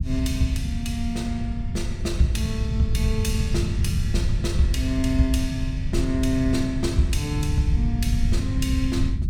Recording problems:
low-frequency rumble; below 110 Hz, SNR 0 dB

